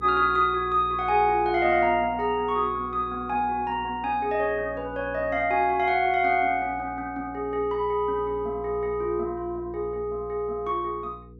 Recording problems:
electrical hum; 60 Hz, harmonics up to 480 Hz, SNR 19 dB

